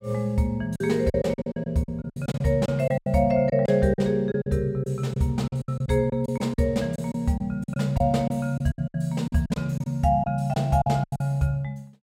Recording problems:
lost packets; 13% of the sound replaced, filled with silence

